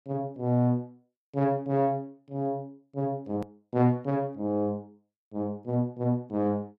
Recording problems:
click at an edit; at 3.5 s

